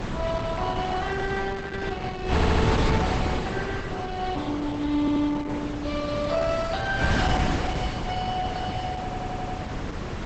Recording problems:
codec artefacts; Opus, log-spectral distance 4 dB, nothing above 7.6 kHz
wind noise; below 680 Hz, SNR 1 dB
stutter; at 2.5 s, at 5 s and at 9 s

